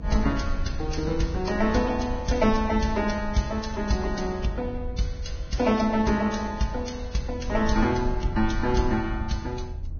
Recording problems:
lossy codec; Vorbis, log-spectral distance 3 dB, nothing above 6.5 kHz
rumble; below 80 Hz, SNR 9 dB

